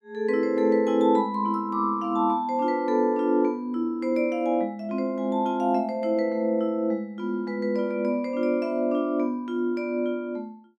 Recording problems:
none

